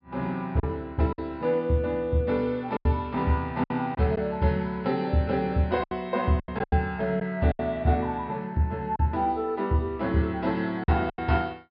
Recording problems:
treble missing; nothing above 5.5 kHz
packet loss; 6% of the sound replaced, filled with silence

